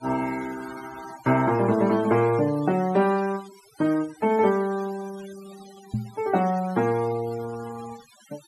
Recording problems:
noise reduction artefacts; signal-to-artefact ratio 20 dB
microphone thump; at 6 s; peak 0 dB vs average level

